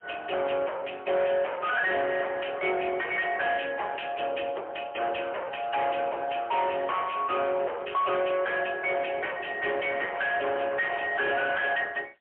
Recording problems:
phone line; 340 Hz to 3.3 kHz, AMR-NB, then MP3
distorted audio; hard clipping, signal-to-distortion ratio 5 dB

